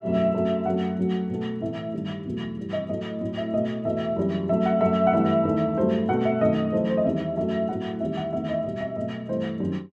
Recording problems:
none

